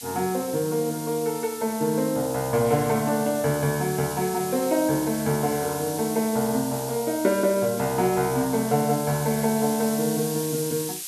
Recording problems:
background hiss; slope +5 dB per octave, SNR 10 dB

